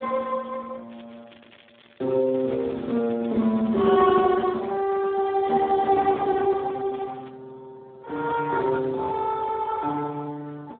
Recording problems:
telephone audio; 150 Hz to 2.1 kHz, Speex
crackling; from 1 to 5 s and at 7 s; loose cable, SNR 29 dB

